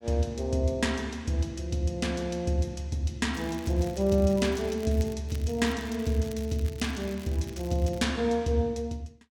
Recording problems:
crackle; from 3.5 to 5 s and from 5.5 to 8 s; loose cable, SNR 20 dB

